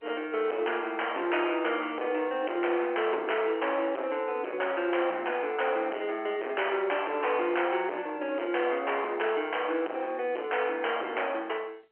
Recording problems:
phone line; 300 Hz to 3.2 kHz, G.711
distorted audio; hard clipping, uneven, signal-to-distortion ratio 9 dB

